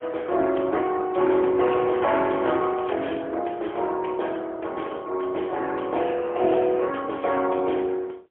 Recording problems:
telephone audio; 300 Hz to 3.3 kHz, AMR-NB, then MP3
crackling; from 1.5 to 3 s; loose cable, SNR 24 dB

